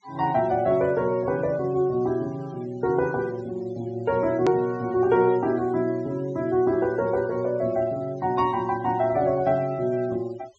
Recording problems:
treble missing; nothing above 8 kHz
noise reduction artefacts; signal-to-artefact ratio 26 dB
hard cut with a click; at 4.5 s

